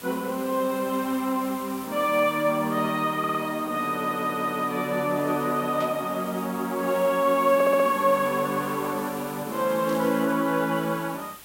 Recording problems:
hiss; slope -1 dB per octave, SNR 17 dB
stutter; at 3 s, at 4 s and at 7.5 s
burst of static; at 6 s and at 10 s; peak -13 dB vs average level

